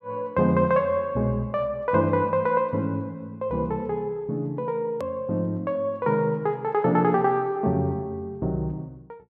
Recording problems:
hard cut with a click; at 5 s

